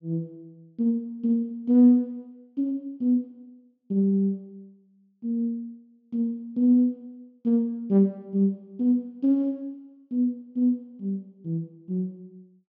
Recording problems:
low-pass filter; nothing above 7.1 kHz

